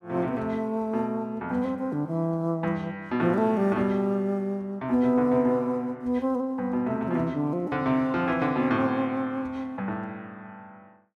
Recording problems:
none

